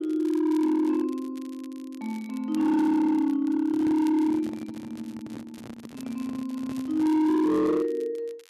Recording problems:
distortion; hard clipping, signal-to-distortion ratio 12 dB
crackle; vinyl, SNR 27 dB
handling noise; from 3.5 to 7.5 s; peak -7 dB vs average level

